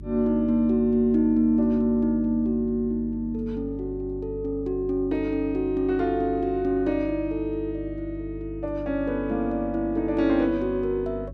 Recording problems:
hum; 50 Hz, harmonics up to 400 Hz, SNR 14 dB

